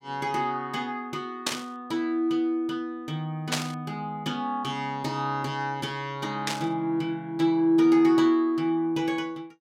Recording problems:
static burst; at 1.5 s, at 3.5 s and at 6.5 s; peak +5 dB vs average level

